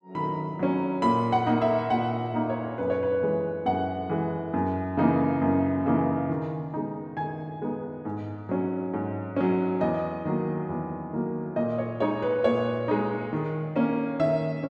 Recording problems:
none

